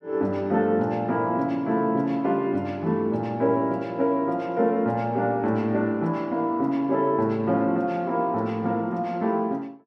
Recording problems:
none

